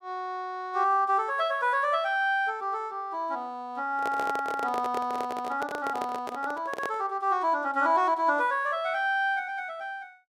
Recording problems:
handling noise; from 4 to 7 s; peak -3 dB vs average level

